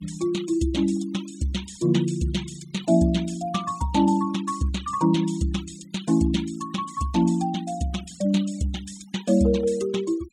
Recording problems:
denoising artefacts; signal-to-artefact ratio 18 dB

